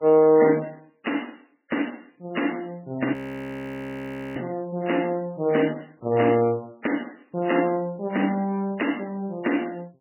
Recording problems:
lossy codec; MP3, log-spectral distance 6 dB, nothing above 2.9 kHz
audio freezing; at 3 s for 1 s

